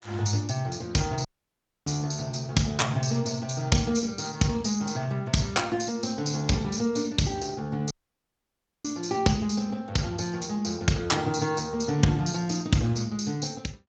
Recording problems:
lossy compression; Speex, log-spectral distance 6 dB, nothing above 19.5 kHz
audio cutting out; at 1.5 s for 0.5 s and at 8 s for 1 s

